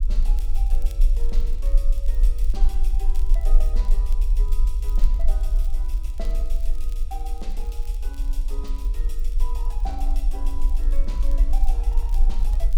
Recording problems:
rumble; below 38 Hz, strongest tone 18 Hz, SNR -16 dB
crackling; vinyl, SNR 13 dB

